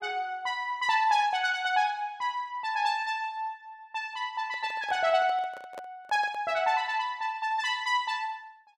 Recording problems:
microphone handling noise; from 4.5 to 6.5 s; peak -9 dB vs average level

